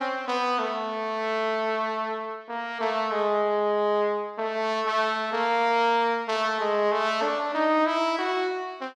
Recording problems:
none

